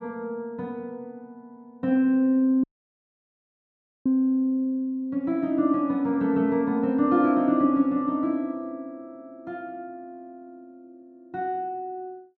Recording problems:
dropout; at 2.5 s for 1.5 s

